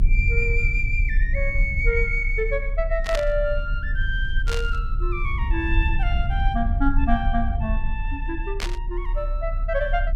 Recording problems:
rumble; below 56 Hz, strongest tone 34 Hz, SNR 0 dB
static burst; at 3 s, at 4.5 s and at 8.5 s; peak +1 dB vs average level

